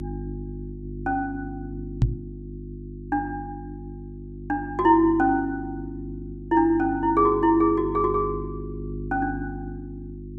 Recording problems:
hum; 50 Hz, harmonics up to 350 Hz, SNR 12 dB
knock on the microphone; at 2 s; peak +7 dB vs average level

